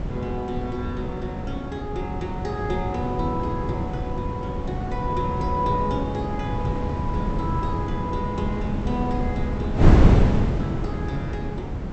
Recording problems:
low-pass filter; nothing above 7.9 kHz
wind noise; below 230 Hz, SNR -4 dB

